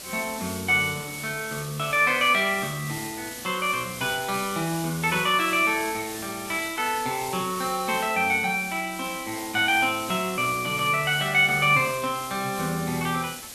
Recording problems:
background hiss; SNR 11 dB

